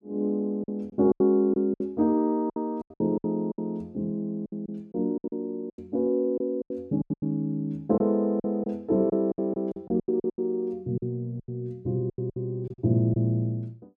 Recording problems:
lost packets; 14% of the sound replaced, filled with silence

